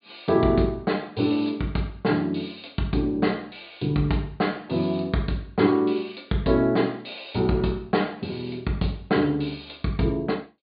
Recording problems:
treble missing; nothing above 4.6 kHz

